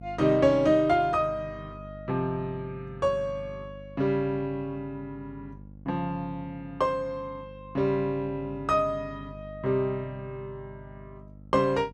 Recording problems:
hum; 50 Hz, harmonics up to 550 Hz, SNR 18 dB

